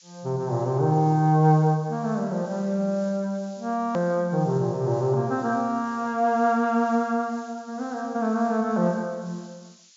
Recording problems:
low-pass filter; nothing above 7.3 kHz
background hiss; slope +6 dB per octave, SNR 27 dB
click at an edit; at 4 s

